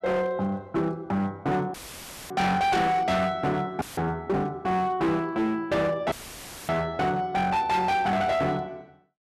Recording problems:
distortion; hard clipping, signal-to-distortion ratio 8 dB
dropout; at 1.5 s for 0.5 s, at 4 s and at 6 s for 0.5 s; filled with static

